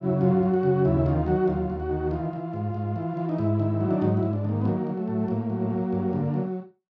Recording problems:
none

